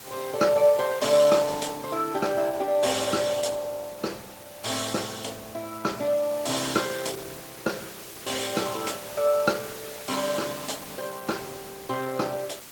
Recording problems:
codec artefacts; Opus, log-spectral distance 8 dB, nothing above 18.3 kHz
background hiss; slope -1 dB per octave, SNR 14 dB

